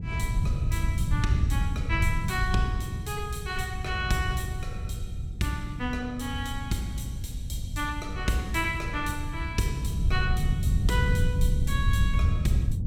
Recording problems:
wind on the microphone; below 110 Hz, SNR -2 dB

